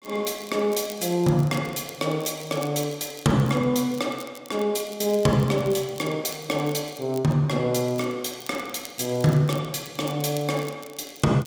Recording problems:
crackling; vinyl, SNR 19 dB

